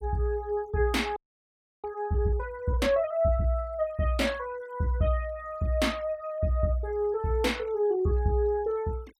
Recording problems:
noise reduction artefacts; signal-to-artefact ratio 27 dB
audio freezing; at 1 s for 0.5 s

